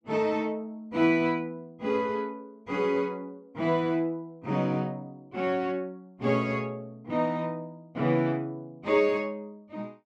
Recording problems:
none

